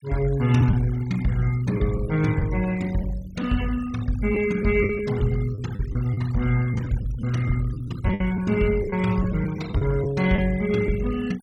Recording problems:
noise reduction artefacts; signal-to-artefact ratio 19 dB
lost packets; 6% of the sound replaced, filled with the last packet

